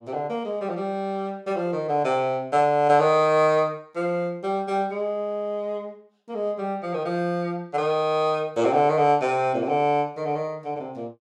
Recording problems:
none

